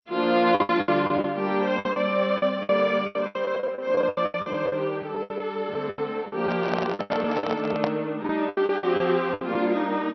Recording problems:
lossy compression; MP2, log-spectral distance 2 dB, nothing above 5.8 kHz
lost packets; 17% of the sound replaced, filled with the last packet
microphone handling noise; from 6.5 to 8 s; peak +2 dB vs average level

